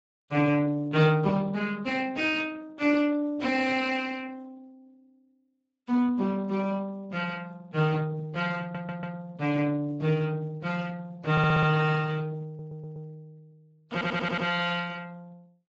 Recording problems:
lossy codec; Speex, log-spectral distance 3 dB
audio stuttering; 4 times, first at 8.5 s

